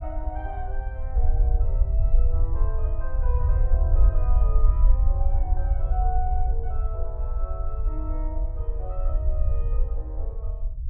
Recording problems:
low-frequency rumble; below 58 Hz, SNR -13 dB

